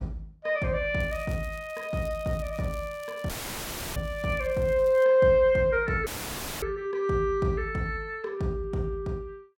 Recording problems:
crackling; from 1 to 5 s; loose cable, SNR 25 dB
audio cutting out; at 3.5 s for 0.5 s and at 6 s for 0.5 s; filled with static

